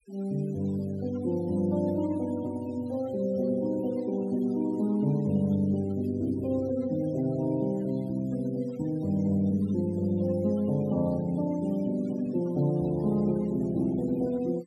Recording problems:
denoising artefacts; signal-to-artefact ratio 23 dB

